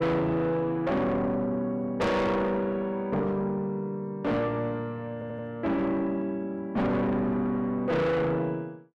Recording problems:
distortion; soft clipping, signal-to-distortion ratio 6 dB
stutter; at 5 s

